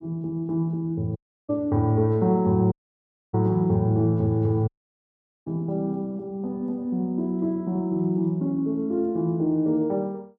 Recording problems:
dropout; at 1 s, at 2.5 s for 0.5 s and at 4.5 s for 1 s

